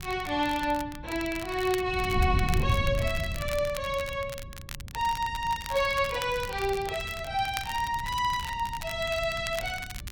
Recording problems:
wind on the microphone; below 120 Hz, SNR 8 dB
crackling; vinyl, SNR 13 dB

